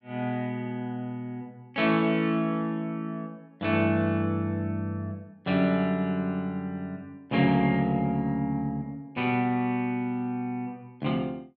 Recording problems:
none

